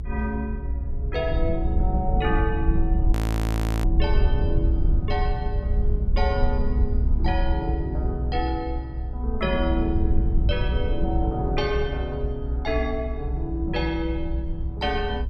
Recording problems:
rumble; below 68 Hz, SNR -2 dB
audio freezing; at 3 s for 0.5 s

